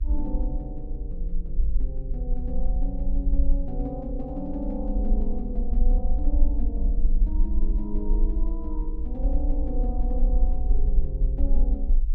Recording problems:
mains hum; 60 Hz, harmonics up to 420 Hz, SNR 17 dB
low-frequency rumble; below 44 Hz, strongest tone 20 Hz, SNR -7 dB

